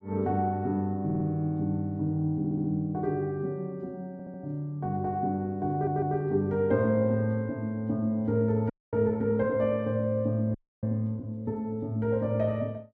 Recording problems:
stutter; 4 times, first at 1 s
frozen audio; at 8.5 s and at 11 s

